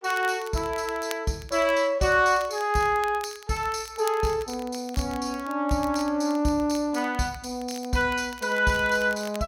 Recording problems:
crackle; vinyl, SNR 20 dB

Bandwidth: 16 kHz